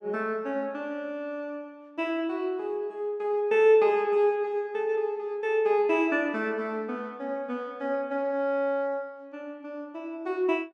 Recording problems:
none

